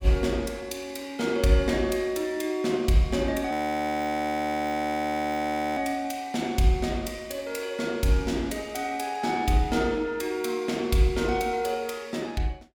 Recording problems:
audio freezing; at 3.5 s for 2.5 s

